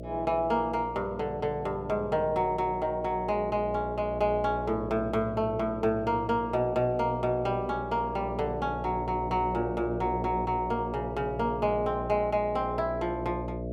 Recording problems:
hum; 60 Hz, harmonics up to 660 Hz, SNR 9 dB

